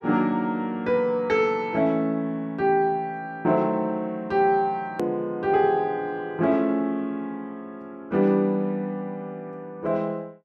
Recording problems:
click at an edit; at 5 s

